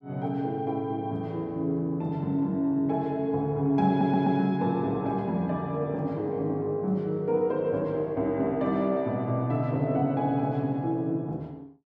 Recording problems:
audio stuttering; at 4 s

